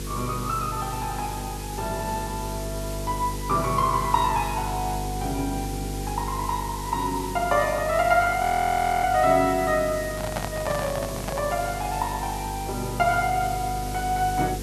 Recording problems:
hum; 50 Hz, harmonics up to 500 Hz, SNR 9 dB
hiss; SNR 12 dB
frozen audio; at 8.5 s for 0.5 s
handling noise; from 10 to 12 s; peak 0 dB vs average level

